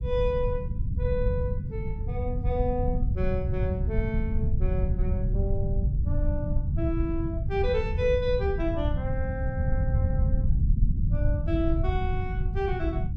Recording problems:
rumble; below 100 Hz, SNR -3 dB

